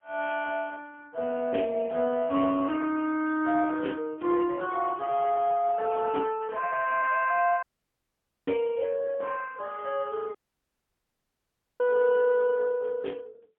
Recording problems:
phone line; 240 Hz to 3.4 kHz, AMR-NB, then MP3
dropout; at 7.5 s for 1 s and at 10 s for 1.5 s

